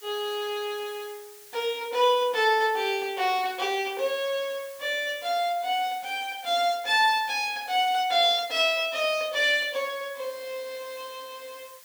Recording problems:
hiss; SNR 21 dB

